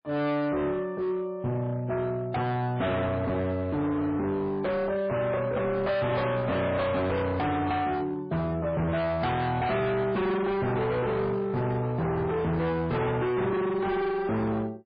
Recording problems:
codec artefacts; MP3, log-spectral distance 2 dB, nothing above 4.5 kHz
distortion; hard clipping, signal-to-distortion ratio 6 dB

